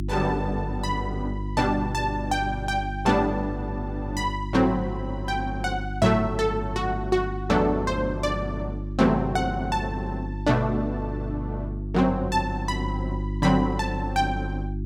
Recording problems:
hum; 50 Hz, harmonics up to 350 Hz, SNR 6 dB

